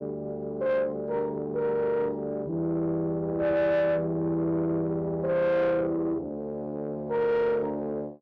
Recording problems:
distorted audio; soft clipping, signal-to-distortion ratio 11 dB

